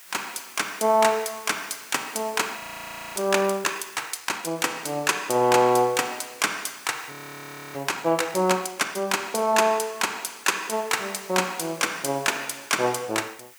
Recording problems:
background hiss; SNR 21 dB
frozen audio; at 2.5 s for 0.5 s and at 7 s for 0.5 s

